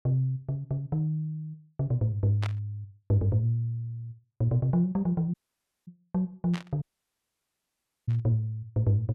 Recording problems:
burst of static; at 2.5 s, at 6.5 s and at 8 s; peak -5 dB vs average level
dropout; at 5.5 s for 0.5 s and at 7 s for 1.5 s

